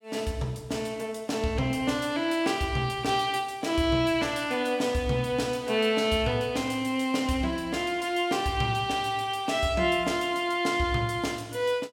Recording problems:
none

